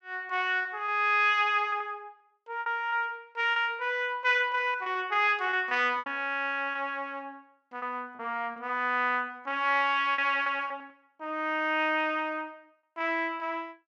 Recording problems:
packet loss; 6% of the sound replaced, filled with repeated pitch periods

